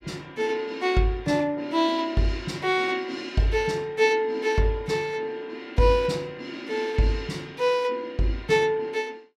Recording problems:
none

